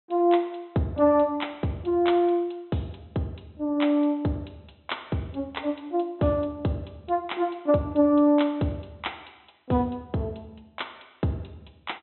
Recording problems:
treble missing; nothing above 4.1 kHz

